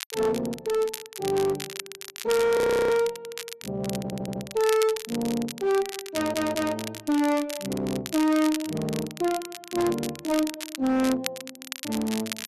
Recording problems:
distorted audio; hard clipping, uneven, signal-to-distortion ratio 7 dB
crackle; vinyl, SNR 11 dB
frozen audio; at 2.5 s
audio stuttering; at 4 s and at 6 s

